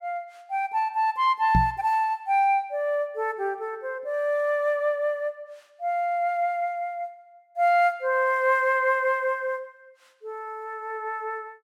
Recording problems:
microphone bump; at 1.5 s; peak +5 dB vs average level

